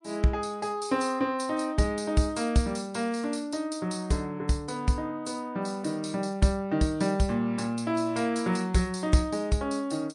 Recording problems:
codec artefacts; MP3, log-spectral distance 4 dB, nothing above 10.1 kHz

